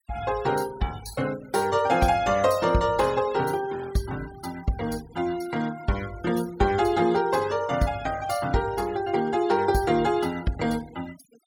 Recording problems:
denoising artefacts; signal-to-artefact ratio 19 dB

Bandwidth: 17.5 kHz